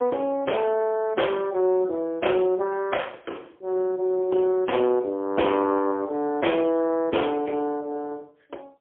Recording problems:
phone line; 260 Hz to 3.4 kHz, AMR-NB, then MP3

